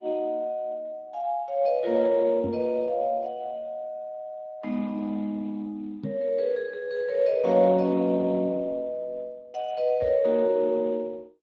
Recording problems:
codec artefacts; Speex, then Opus, log-spectral distance 2 dB
microphone bump; at 2.5 s, at 6 s and at 10 s; peak -1 dB vs average level

